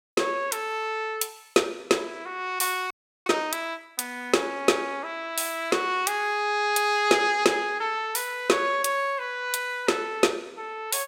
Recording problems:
frozen audio; at 3 s

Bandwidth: 16.5 kHz